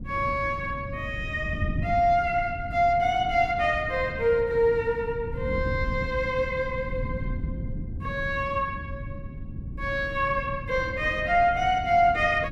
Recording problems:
wind noise; below 160 Hz, SNR 10 dB

